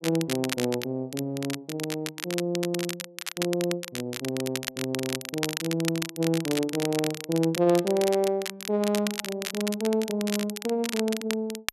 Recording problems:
crackling; vinyl, SNR 6 dB

